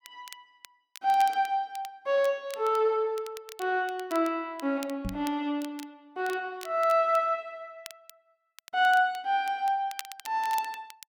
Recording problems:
crackling; vinyl, SNR 19 dB
microphone thump; at 5 s; peak -3 dB vs average level

